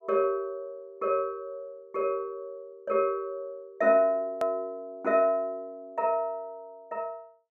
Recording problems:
hard cut with a click; at 4.5 s

